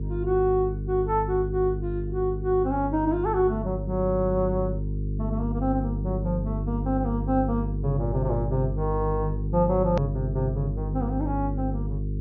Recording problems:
low-pass filter; nothing above 6.6 kHz
electrical hum; 50 Hz, harmonics up to 450 Hz, SNR 3 dB
hard cut with a click; at 10 s

